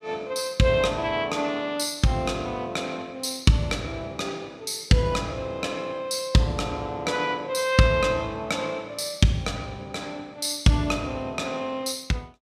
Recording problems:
none

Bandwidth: 14.5 kHz